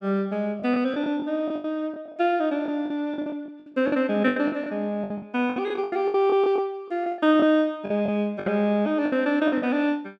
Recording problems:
lost packets; 15% of the sound replaced, filled with the last packet

